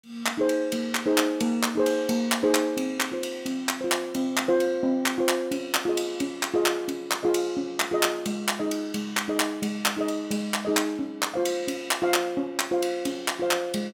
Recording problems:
none

